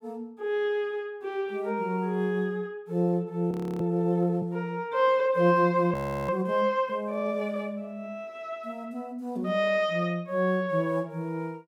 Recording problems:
audio freezing; at 3.5 s and at 6 s

